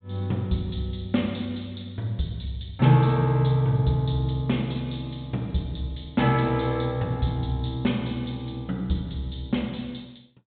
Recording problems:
treble missing; nothing above 4 kHz

